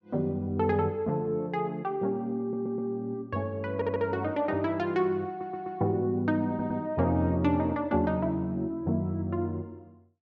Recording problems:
stutter; 4 times, first at 2.5 s

